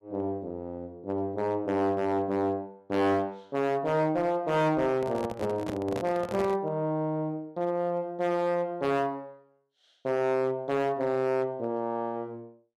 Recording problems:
distortion; hard clipping, signal-to-distortion ratio 11 dB
handling noise; from 5 to 6.5 s; peak -2 dB vs average level

